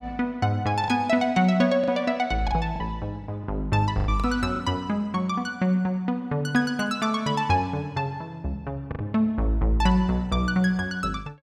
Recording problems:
lost packets; 4% of the sound replaced, filled with the last packet

